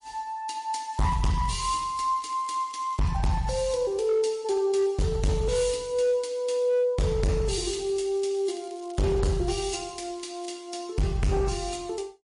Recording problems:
lossy compression; MP3, log-spectral distance 3 dB, nothing above 10.4 kHz
distortion; hard clipping, signal-to-distortion ratio 8 dB
crackling; from 1 to 3 s and from 7.5 to 10 s; loose cable, SNR 25 dB

